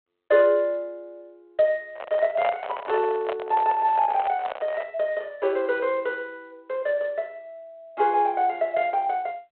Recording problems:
phone line; 340 Hz to 3.7 kHz, G.726
microphone handling noise; from 2 to 5 s; peak 0 dB vs average level

